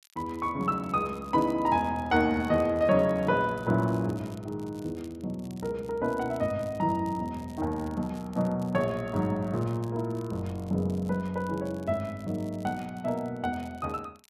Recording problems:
crackle; vinyl, SNR 27 dB

